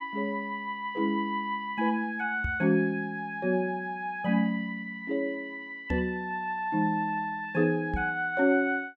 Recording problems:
microphone bump; at 2.5 s, at 6 s and at 8 s; peak 0 dB vs average level

